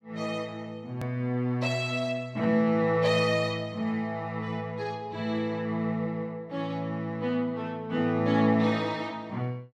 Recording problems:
click at an edit; at 1 s

